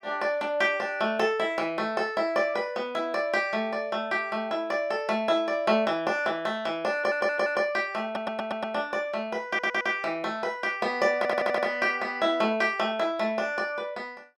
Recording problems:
stutter; 4 times, first at 7 s

